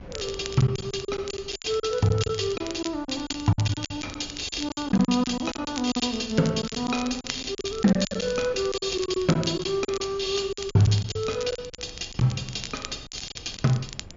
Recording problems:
treble cut off; nothing above 7.1 kHz
wind noise; below 280 Hz, SNR 20 dB
crackling; vinyl, SNR 13 dB
lost packets; 13% of the sound replaced, filled with silence

